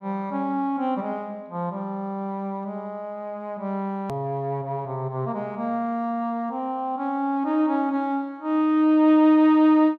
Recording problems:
hard cut with a click; at 4 s

